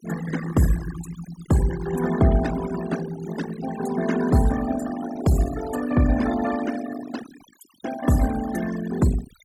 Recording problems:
denoising artefacts; signal-to-artefact ratio 12 dB

